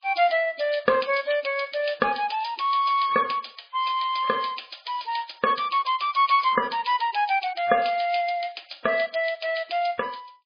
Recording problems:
codec artefacts; MP3, log-spectral distance 9 dB, nothing above 5 kHz

